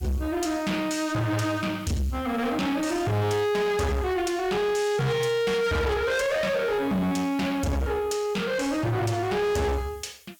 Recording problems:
distorted audio; soft clipping, signal-to-distortion ratio 7 dB
background hiss; slope +5 dB per octave, SNR 27 dB

